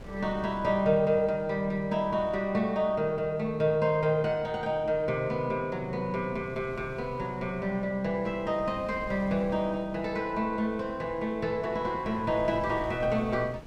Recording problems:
wind noise; below 370 Hz, SNR 19 dB

